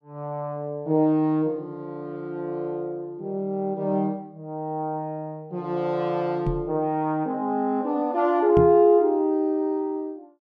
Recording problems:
microphone thump; at 6.5 s and at 8.5 s; peak +3 dB vs average level

